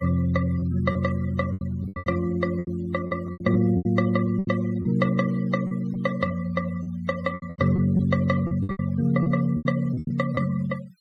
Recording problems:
noise reduction artefacts; signal-to-artefact ratio 18 dB
packet loss; 13% of the sound replaced, filled with repeated pitch periods

